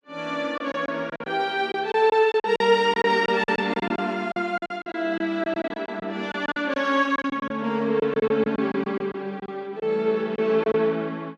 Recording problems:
packet loss; 12% of the sound replaced, filled with silence

